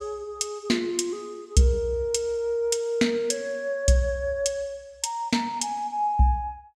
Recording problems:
none

